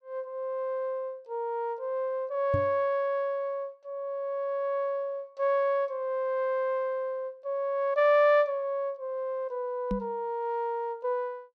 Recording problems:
knock on the microphone; at 2.5 s and at 10 s; peak +2 dB vs average level

